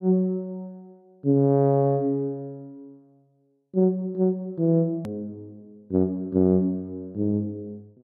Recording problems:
edit click; at 5 s

